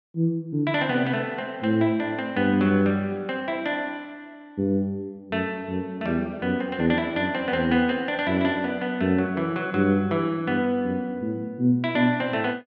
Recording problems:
none

